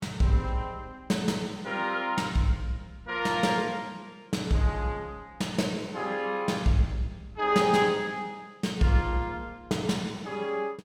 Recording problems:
none

